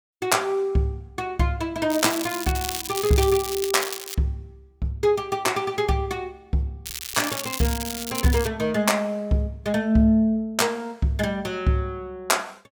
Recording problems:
crackling; from 2 to 4 s and from 7 to 8.5 s; loose cable, SNR 7 dB

